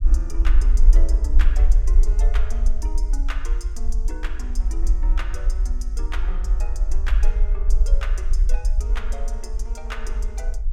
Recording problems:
rumble; below 44 Hz, SNR -14 dB

